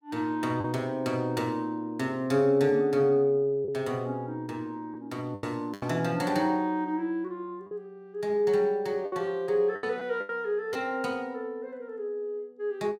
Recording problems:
lost packets; 4% of the sound replaced, filled with the last packet

